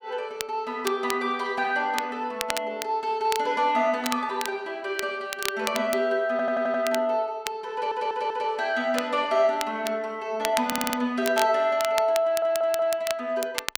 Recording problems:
crackle; vinyl, SNR 9 dB
audio stuttering; 4 times, first at 6.5 s

